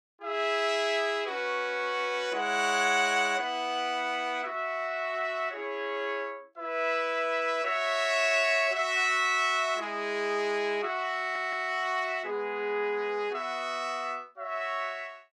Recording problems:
stutter; at 11 s

